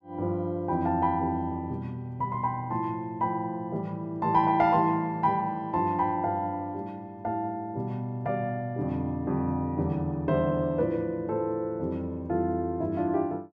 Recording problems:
none

